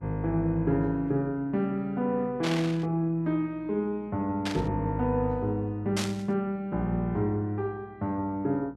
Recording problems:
hum; 60 Hz, harmonics up to 1.3 kHz, SNR 25 dB
burst of static; at 2.5 s, at 4.5 s and at 6 s; peak 0 dB vs average level

